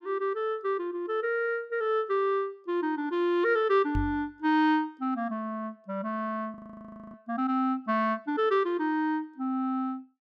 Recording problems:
microphone thump; at 4 s; peak +1 dB vs average level
audio freezing; at 6.5 s for 0.5 s

